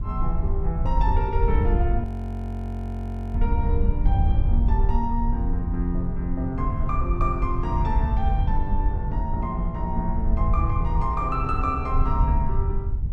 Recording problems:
wind noise; below 76 Hz, SNR -3 dB
audio freezing; at 2 s for 1.5 s

